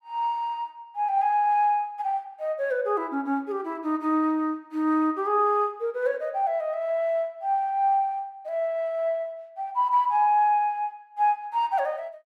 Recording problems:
none

